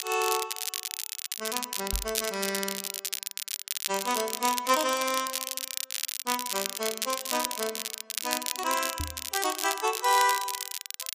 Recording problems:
lossy compression; AAC, log-spectral distance 3 dB, nothing above 11.3 kHz
crackling; vinyl, SNR 2 dB
knock on the microphone; at 2 s and at 9 s; peak -1 dB vs average level

